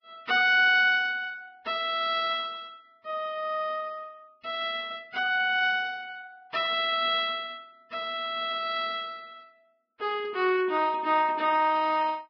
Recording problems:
lossy compression; Vorbis, log-spectral distance 3 dB, nothing above 5.2 kHz

